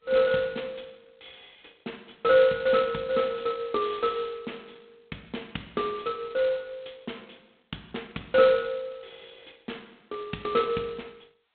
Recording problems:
phone line; 190 Hz to 3.9 kHz, G.726

